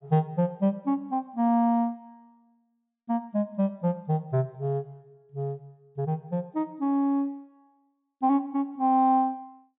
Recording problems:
treble cut off; nothing above 4 kHz

